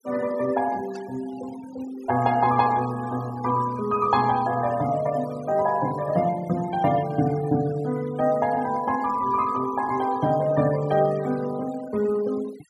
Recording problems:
noise reduction artefacts; signal-to-artefact ratio 20 dB
static burst; at 1 s; peak -19 dB vs average level

